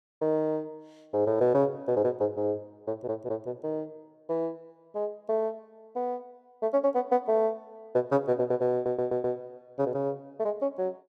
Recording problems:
audio stuttering; at 3 s and at 8.5 s

